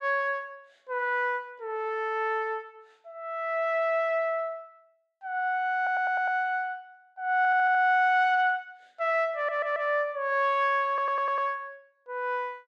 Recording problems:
stutter; 4 times, first at 6 s

